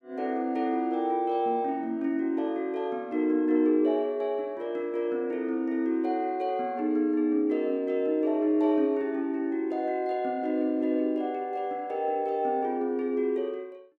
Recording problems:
none

